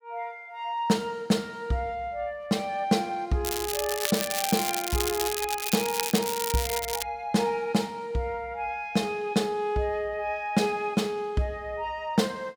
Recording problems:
crackling; from 3.5 to 7 s; loose cable, SNR 2 dB

